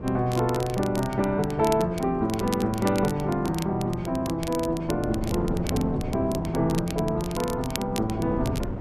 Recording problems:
wind on the microphone; below 350 Hz, SNR 9 dB
crackling; vinyl, SNR 14 dB

